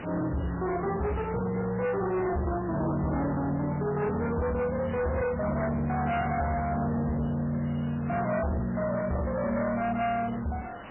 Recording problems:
lossy compression; MP3, log-spectral distance 8 dB, nothing above 2.4 kHz
distortion; soft clipping, signal-to-distortion ratio 7 dB
hiss; SNR 15 dB

